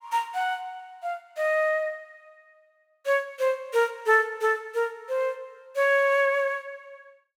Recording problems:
none

